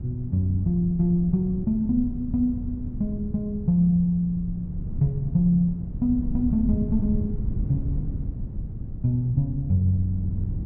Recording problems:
wind on the microphone; below 140 Hz, SNR 8 dB

